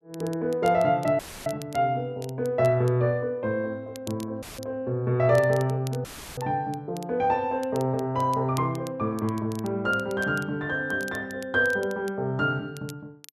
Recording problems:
crackling; vinyl, SNR 22 dB
dropout; at 1 s, at 4.5 s and at 6 s; filled with static

